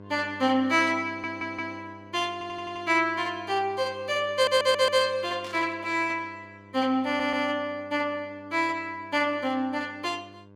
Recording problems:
hum; 50 Hz, harmonics up to 1.6 kHz, SNR 22 dB
audio stuttering; 4 times, first at 1 s
static burst; at 5.5 s; peak -13 dB vs average level

